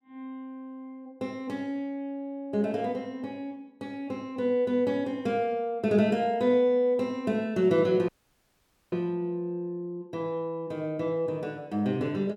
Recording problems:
audio cutting out; at 8 s for 1 s

